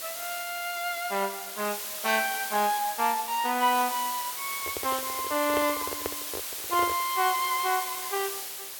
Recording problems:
background hiss; slope +1 dB per octave, SNR 5 dB
microphone handling noise; from 4.5 to 7 s; peak 0 dB vs average level

